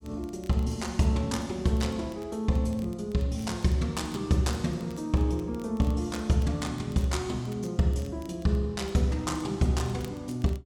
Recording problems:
crackling; vinyl, SNR 27 dB

